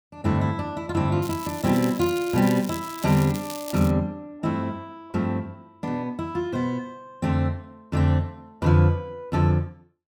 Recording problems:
crackling; from 1 to 4 s; loose cable, SNR 14 dB

